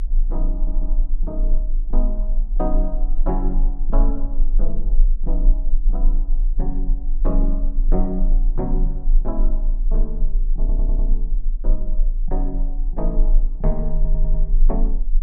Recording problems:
low-frequency rumble; below 30 Hz, strongest tone 28 Hz, SNR -8 dB
audio stuttering; at 0.5 s, at 11 s and at 14 s

